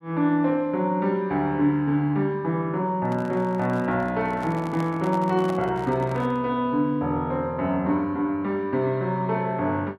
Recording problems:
handling noise; from 3 to 6.5 s; peak -7 dB vs average level

